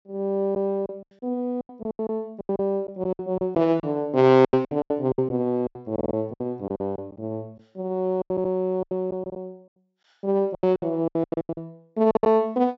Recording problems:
low-pass filter; nothing above 8 kHz
lost packets; 16% of the sound replaced, filled with silence
stutter; at 6 s and at 8.5 s

